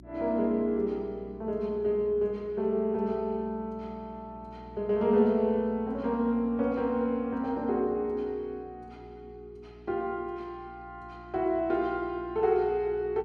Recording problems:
electrical hum; 60 Hz, harmonics up to 360 Hz, SNR 21 dB

